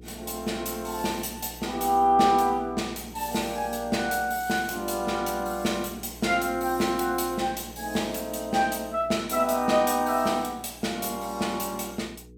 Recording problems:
hum; 60 Hz, harmonics up to 480 Hz, SNR 20 dB

